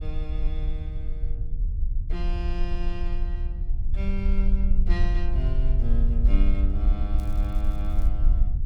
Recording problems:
rumble; below 52 Hz, strongest tone 22 Hz, SNR -9 dB
crackling; at 7 s; loose cable, SNR 21 dB

